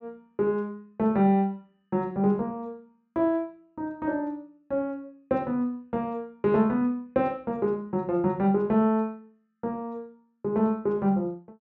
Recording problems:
treble cut off; nothing above 8 kHz

